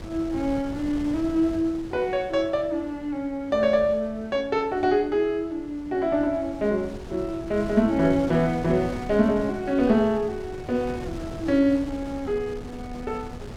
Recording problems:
wind on the microphone; below 400 Hz, SNR 15 dB

